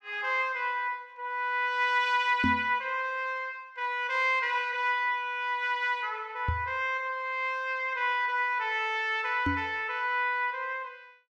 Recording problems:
knock on the microphone; at 2.5 s, at 6.5 s and at 9.5 s; peak +3 dB vs average level

